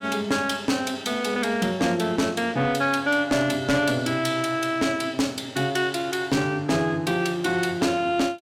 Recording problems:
distortion; soft clipping, signal-to-distortion ratio 11 dB

